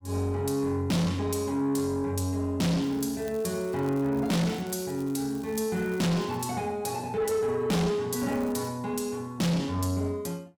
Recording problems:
distorted audio; soft clipping, signal-to-distortion ratio 7 dB
crackling; from 3 to 6.5 s and at 8 s; loose cable, SNR 23 dB

